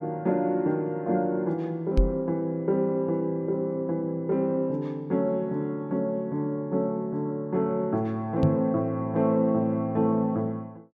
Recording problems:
knock on the microphone; at 2 s and at 8.5 s; peak +7 dB vs average level

